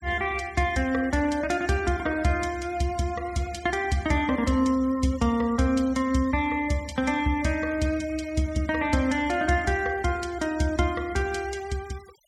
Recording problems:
denoising artefacts; signal-to-artefact ratio 22 dB

